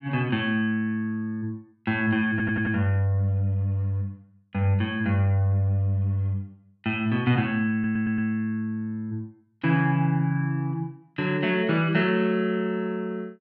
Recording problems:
audio stuttering; at 2.5 s and at 7.5 s

